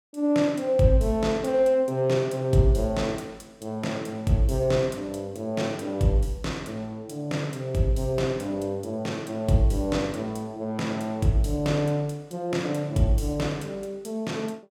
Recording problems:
none

